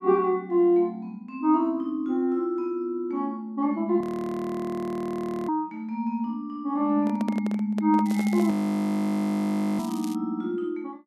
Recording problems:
frozen audio; at 4 s for 1.5 s and at 8.5 s for 1.5 s
microphone handling noise; from 7 to 8.5 s; peak -6 dB vs average level
crackle; from 8 to 10 s; loose cable, SNR 21 dB

